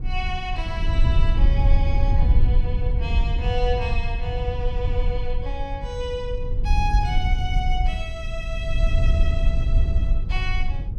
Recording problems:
low-frequency rumble; below 64 Hz, SNR -6 dB
wind on the microphone; below 92 Hz, SNR 3 dB

